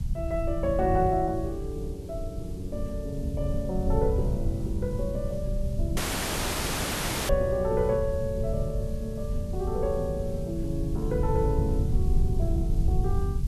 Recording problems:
hiss; SNR 23 dB
low-frequency rumble; below 90 Hz, SNR 2 dB
dropout; at 6 s for 1.5 s

